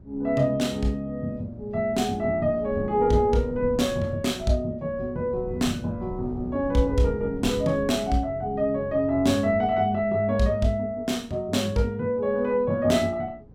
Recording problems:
wind noise; below 210 Hz, SNR 15 dB

